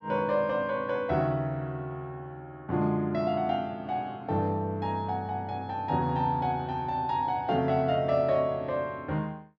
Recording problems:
none

